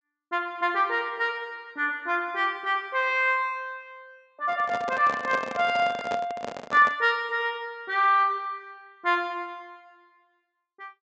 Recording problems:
treble cut off; nothing above 8 kHz
handling noise; from 4.5 to 7 s; peak -2 dB vs average level

